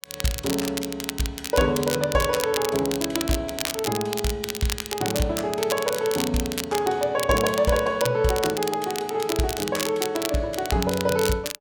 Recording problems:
crackle; vinyl, SNR 6 dB

